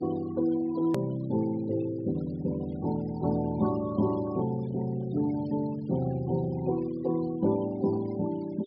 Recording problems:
treble cut off; nothing above 5.5 kHz
denoising artefacts; signal-to-artefact ratio 20 dB
edit click; at 1 s

